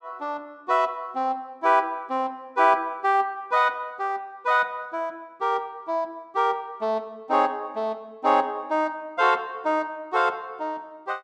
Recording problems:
none

